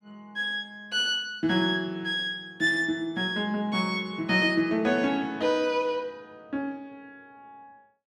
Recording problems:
none

